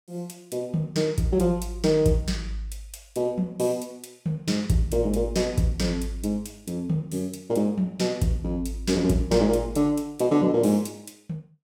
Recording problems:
none

